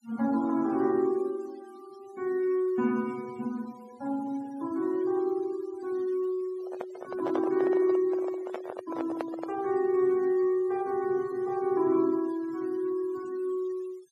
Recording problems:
noise reduction artefacts; signal-to-artefact ratio 22 dB
handling noise; from 6.5 to 9.5 s; peak -1 dB vs average level

